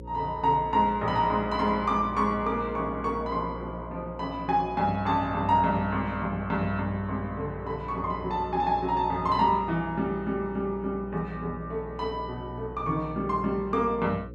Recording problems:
hum; 60 Hz, harmonics up to 540 Hz, SNR 14 dB

